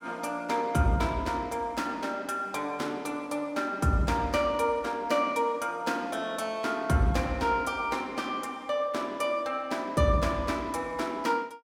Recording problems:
none

